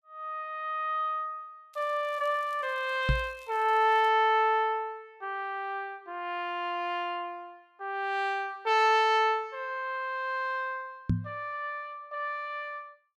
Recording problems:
crackling; from 1.5 to 4 s; loose cable, SNR 29 dB
knock on the microphone; at 3 s and at 11 s; peak +6 dB vs average level

